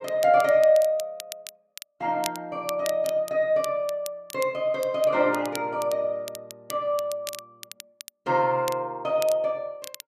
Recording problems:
crackle; vinyl, SNR 16 dB

